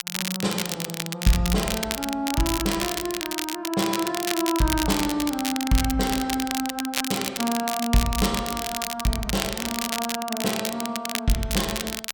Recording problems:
crackle; vinyl, SNR 3 dB

